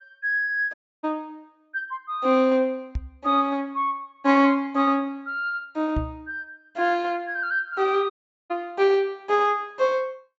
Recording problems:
low-pass filter; nothing above 8 kHz
audio cutting out; at 0.5 s and at 8 s
knock on the microphone; at 3 s and at 6 s; peak 0 dB vs average level

